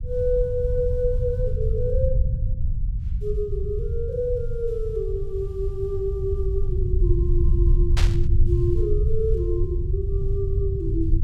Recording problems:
rumble; below 84 Hz, SNR -3 dB
burst of static; at 8 s; peak +3 dB vs average level

